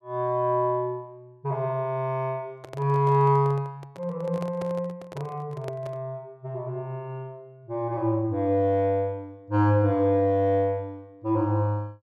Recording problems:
microphone handling noise; from 2.5 to 6 s; peak -8 dB vs average level

